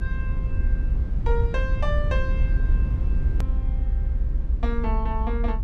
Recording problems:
low-frequency rumble; below 64 Hz, SNR -6 dB
click at an edit; at 3.5 s

